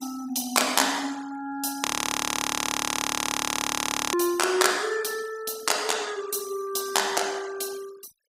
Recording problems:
denoising artefacts; signal-to-artefact ratio 21 dB
frozen audio; at 2 s for 2.5 s

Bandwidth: 15.5 kHz